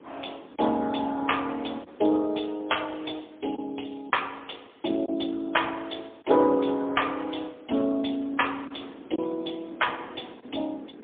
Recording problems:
phone line; 220 Hz to 3.6 kHz, AMR-NB, then MP3
wind noise; below 490 Hz, SNR 21 dB
lost packets; 1.4% of the sound replaced, filled with silence

